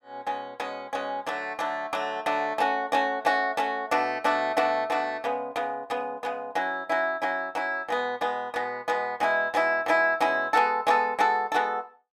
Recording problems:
none

